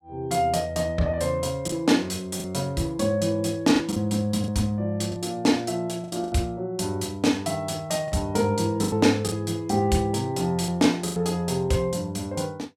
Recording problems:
lost packets; 5% of the sound replaced, filled with the last packet

